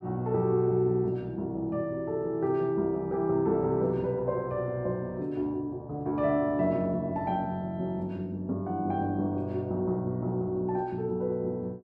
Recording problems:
none

